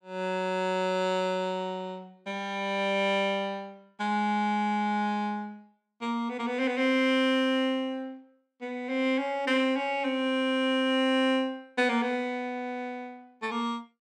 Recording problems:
none

